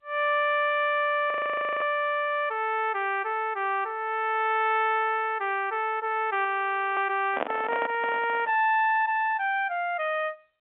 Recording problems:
telephone audio; 190 Hz to 3.5 kHz, G.711
frozen audio; at 1.5 s for 0.5 s and at 6.5 s for 0.5 s
handling noise; from 7.5 to 8.5 s; peak +2 dB vs average level

